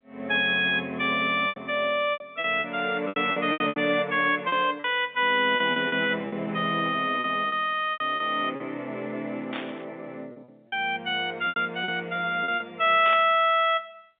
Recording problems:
phone line; 280 Hz to 3.6 kHz, G.711
packet loss; 9% of the sound replaced, filled with repeated pitch periods
burst of static; at 9.5 s and at 13 s; peak -5 dB vs average level

